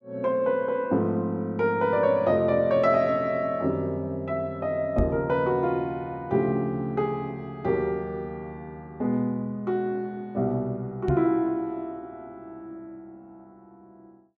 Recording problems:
microphone bump; at 5 s and at 11 s; peak +4 dB vs average level

